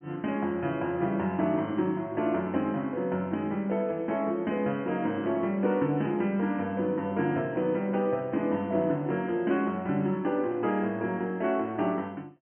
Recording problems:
treble missing; nothing above 3.1 kHz

